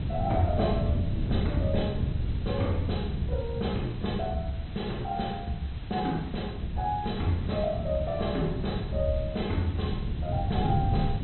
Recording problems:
treble missing; nothing above 4 kHz
lossy compression; AAC, log-spectral distance 2 dB
background hiss; SNR 18 dB
wind noise; below 150 Hz, SNR 2 dB

